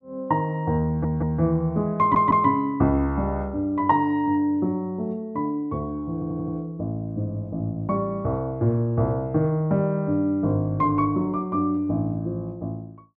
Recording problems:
audio stuttering; at 1 s, at 2 s and at 6 s

